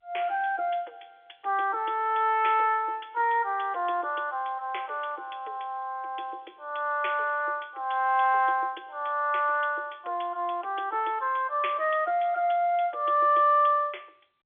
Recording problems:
telephone audio; 300 Hz to 3.5 kHz, G.711

